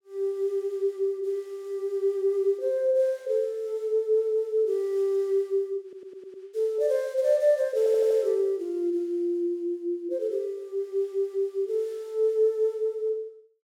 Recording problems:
stutter; at 6 s and at 8 s

